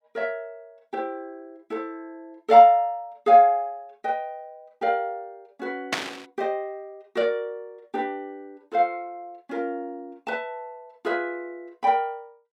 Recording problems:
burst of static; at 6 s; peak +3 dB vs average level

